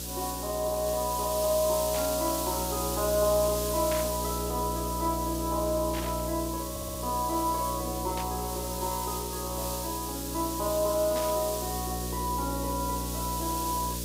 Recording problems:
hum; 60 Hz, harmonics up to 600 Hz, SNR 7 dB
hiss; SNR 4 dB
burst of static; 5 times, first at 2 s; peak -3 dB vs average level
stutter; at 6.5 s

